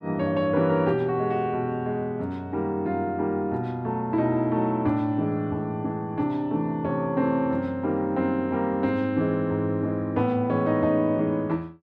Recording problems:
none

